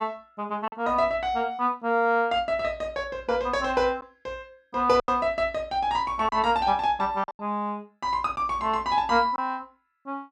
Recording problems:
lost packets; 3% of the sound replaced, filled with silence

